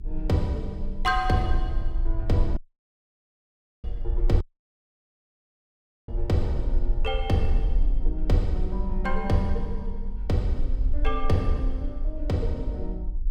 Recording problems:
electrical hum; 50 Hz, harmonics up to 400 Hz, SNR 20 dB
low-frequency rumble; below 42 Hz, strongest tone 24 Hz, SNR 2 dB
dropout; at 2.5 s for 1.5 s and at 4.5 s for 1.5 s

